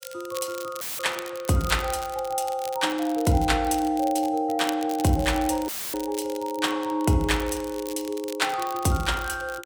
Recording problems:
crackling; vinyl, SNR 15 dB
dropout; at 1 s and at 5.5 s; filled with static

